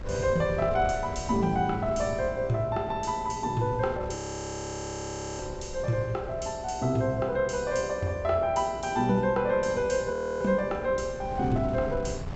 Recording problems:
treble missing; nothing above 7.9 kHz
hum; 60 Hz, harmonics up to 660 Hz, SNR 20 dB
wind on the microphone; below 160 Hz, SNR 14 dB
audio freezing; at 4 s for 1 s and at 10 s

